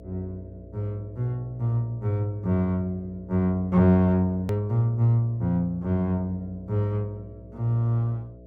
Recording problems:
electrical hum; 60 Hz, harmonics up to 660 Hz, SNR 21 dB
click at an edit; at 4.5 s

